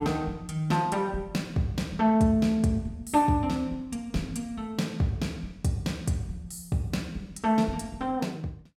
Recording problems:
none

